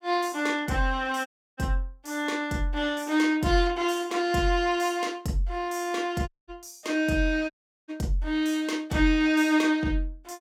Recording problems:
audio cutting out; at 1.5 s, at 6.5 s and at 7.5 s

